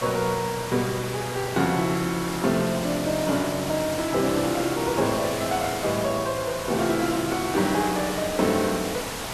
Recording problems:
hiss; slope -3 dB per octave, SNR 7 dB

